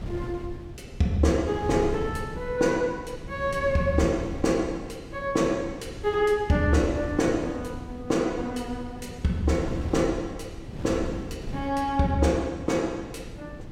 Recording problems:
wind noise; below 220 Hz, SNR 12 dB

